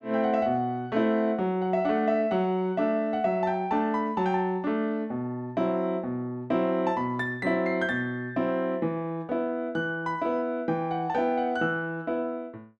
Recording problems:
none

